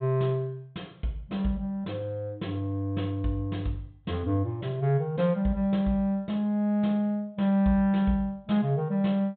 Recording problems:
low-pass filter; nothing above 4 kHz

